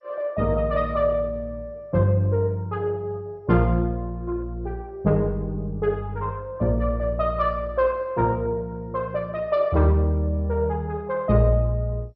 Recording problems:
codec artefacts; MP2, log-spectral distance 2 dB, nothing above 5.3 kHz

